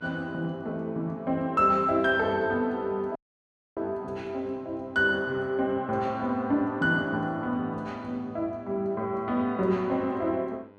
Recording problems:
hum; 50 Hz, harmonics up to 2.6 kHz, SNR 26 dB
dropout; at 3 s for 0.5 s

